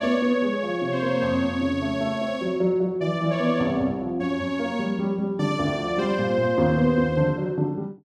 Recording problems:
none

